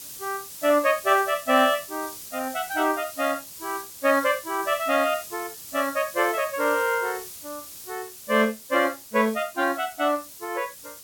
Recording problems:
hiss; SNR 13 dB

